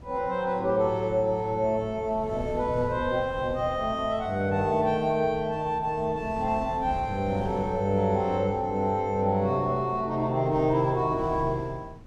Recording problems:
wind noise; below 230 Hz, SNR 15 dB

